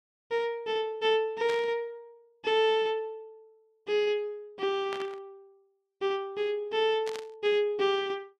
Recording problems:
static burst; at 1.5 s, at 5 s and at 7 s; peak -7 dB vs average level

